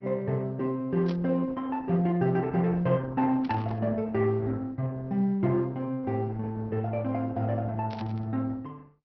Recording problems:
treble cut off; nothing above 5.7 kHz
lossy compression; Opus, log-spectral distance 2 dB
static burst; at 1 s, at 3.5 s and at 8 s; peak -12 dB vs average level

